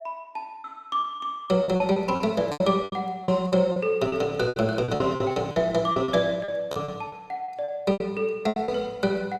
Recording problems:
lost packets; 16% of the sound replaced, filled with repeated pitch periods

